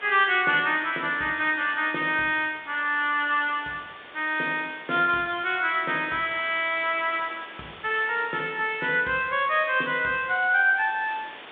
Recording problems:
phone line; 190 Hz to 3.7 kHz, G.726
hiss; SNR 19 dB

